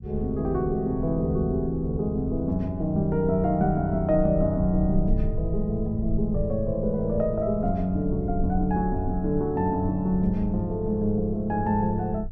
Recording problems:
rumble; below 74 Hz, SNR 10 dB

